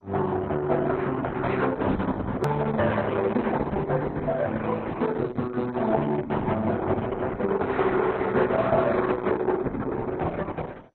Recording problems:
lossy codec; Opus, then MP2, log-spectral distance 3 dB, nothing above 13.1 kHz
edit click; at 2.5 s

